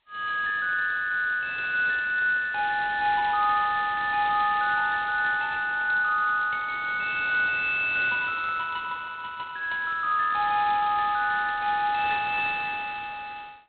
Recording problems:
telephone audio; 840 Hz to 2.6 kHz, G.726

